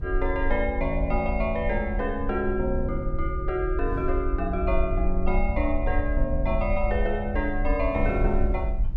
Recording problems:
low-frequency rumble; below 56 Hz, SNR 3 dB
wind on the microphone; below 140 Hz, SNR 13 dB

